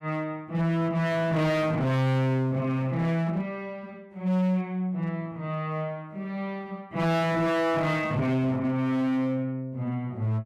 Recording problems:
distortion; hard clipping, signal-to-distortion ratio 7 dB

